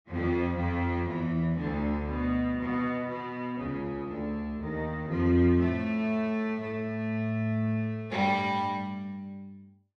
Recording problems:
none

